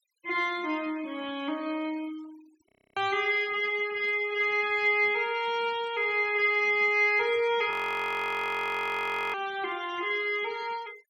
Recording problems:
denoising artefacts; signal-to-artefact ratio 24 dB
frozen audio; at 2.5 s and at 7.5 s for 1.5 s

